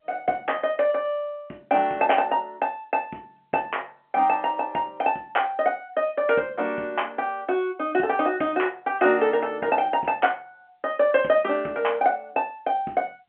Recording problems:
telephone audio; 190 Hz to 3.2 kHz, G.711

